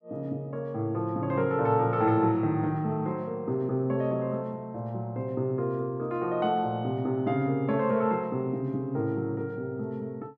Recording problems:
none

